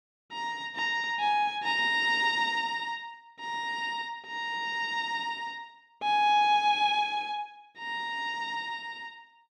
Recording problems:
none

